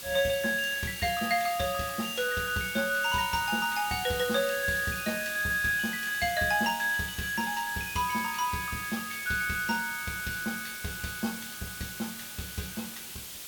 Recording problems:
background hiss; slope +1 dB per octave, SNR 9 dB

